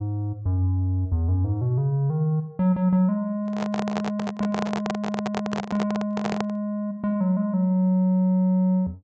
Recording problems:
treble cut off; nothing above 8 kHz
handling noise; from 3.5 to 6.5 s; peak -1 dB vs average level

